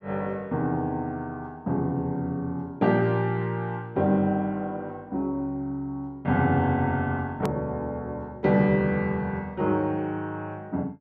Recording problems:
hard cut with a click; at 7.5 s

